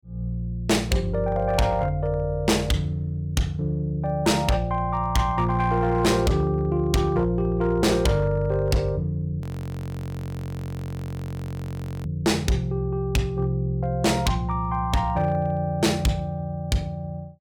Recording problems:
distortion; hard clipping, uneven, signal-to-distortion ratio 10 dB
frozen audio; at 9.5 s for 2.5 s

